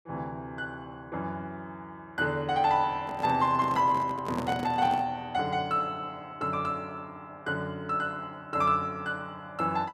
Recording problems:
handling noise; from 3 to 5 s; peak -2 dB vs average level

